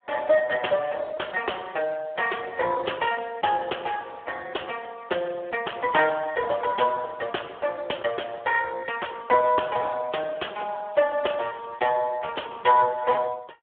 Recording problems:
telephone audio; 320 Hz to 3.4 kHz, Speex

